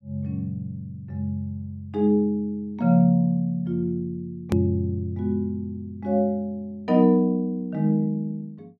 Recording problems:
edit click; at 4.5 s

